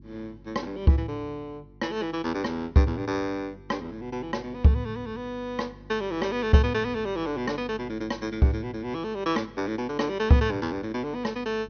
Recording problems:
treble missing; nothing above 6.3 kHz
hum; 50 Hz, harmonics up to 350 Hz, SNR 23 dB

